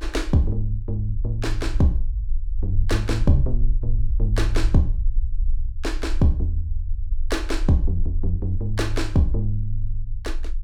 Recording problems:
low-frequency rumble; below 44 Hz, strongest tone 20 Hz, SNR 4 dB

